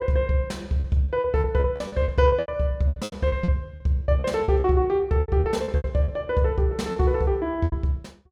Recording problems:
lost packets; 16% of the sound replaced, filled with repeated pitch periods

